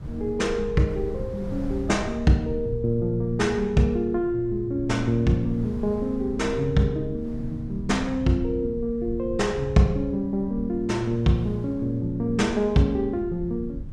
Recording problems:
low-frequency rumble; below 120 Hz, SNR 13 dB
wind on the microphone; below 220 Hz, SNR 21 dB

